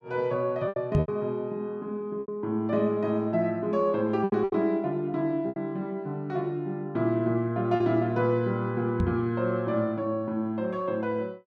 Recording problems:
lost packets; 5% of the sound replaced, filled with repeated pitch periods
microphone bump; at 1 s and at 9 s; peak +6 dB vs average level

